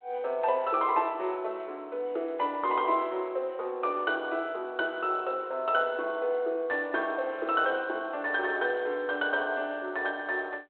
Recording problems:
phone line; 320 Hz to 3.5 kHz, G.726

